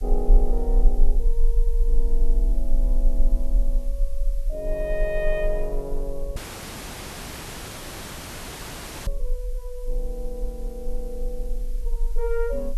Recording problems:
background hiss; slope +1 dB per octave, SNR 21 dB
low-frequency rumble; below 34 Hz, strongest tone 20 Hz, SNR -5 dB
audio cutting out; at 6.5 s for 2.5 s

